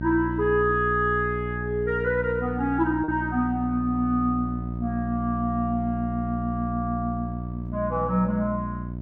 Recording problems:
hum; 60 Hz, harmonics up to 660 Hz, SNR 6 dB
lost packets; 0.4% of the sound replaced, filled with repeated pitch periods

